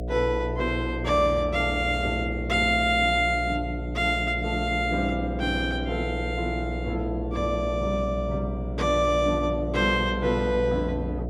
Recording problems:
electrical hum; 60 Hz, harmonics up to 720 Hz, SNR 7 dB

